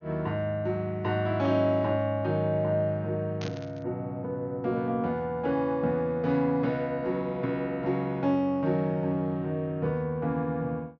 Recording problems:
treble cut off; nothing above 6.6 kHz
static burst; at 3.5 s; peak -8 dB vs average level

